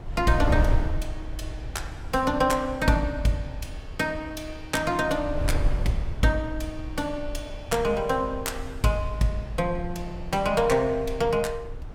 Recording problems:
wind noise; below 88 Hz, SNR 7 dB

